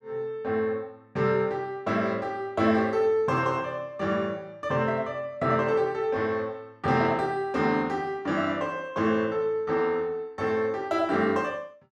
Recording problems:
none

